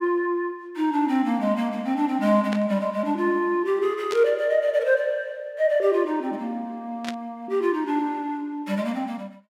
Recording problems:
burst of static; at 2.5 s, at 4 s and at 7 s; peak -5 dB vs average level

